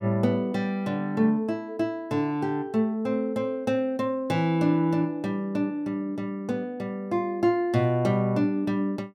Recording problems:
none

